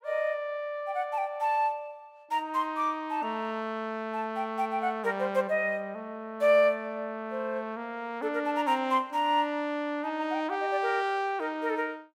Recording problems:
none

